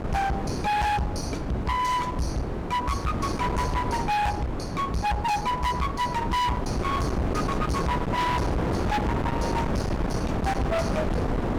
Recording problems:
distorted audio; hard clipping, uneven, signal-to-distortion ratio 5 dB
wind noise; below 720 Hz, SNR 2 dB

